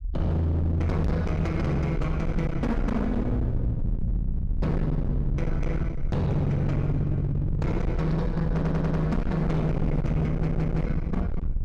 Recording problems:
distortion; hard clipping, uneven, signal-to-distortion ratio 7 dB
low-frequency rumble; below 120 Hz, SNR 5 dB
microphone thump; at 1 s; peak +4 dB vs average level
stutter; at 8.5 s and at 10 s

